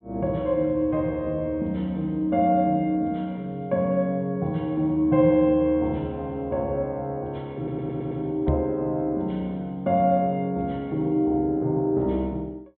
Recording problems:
low-pass filter; nothing above 4 kHz
audio stuttering; at 7.5 s
microphone thump; at 8.5 s; peak +4 dB vs average level

